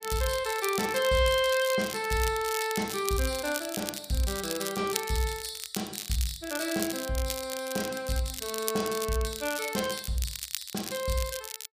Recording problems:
crackle; vinyl, SNR 7 dB

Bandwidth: 15 kHz